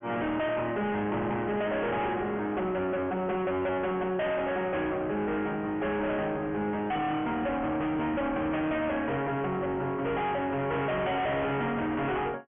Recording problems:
low-pass filter; nothing above 3.2 kHz
distorted audio; hard clipping, uneven, signal-to-distortion ratio 5 dB
crackling; from 4.5 to 7 s and from 7.5 to 12 s; loose cable, SNR 40 dB

